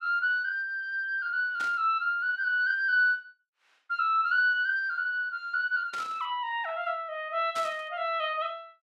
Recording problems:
static burst; at 1.5 s, at 6 s and at 7.5 s; peak -9 dB vs average level

